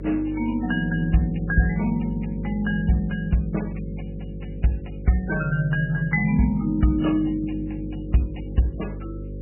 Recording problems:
codec artefacts; MP3, log-spectral distance 4 dB, nothing above 2.9 kHz
hum; 50 Hz, harmonics up to 550 Hz, SNR 10 dB

